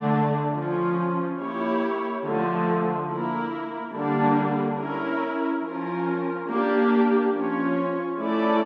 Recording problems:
none

